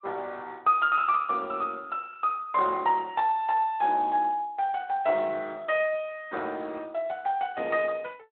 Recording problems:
phone line; 320 Hz to 3.8 kHz, Speex

